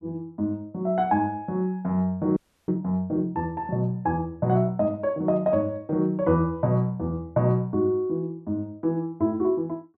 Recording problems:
frozen audio; at 2.5 s

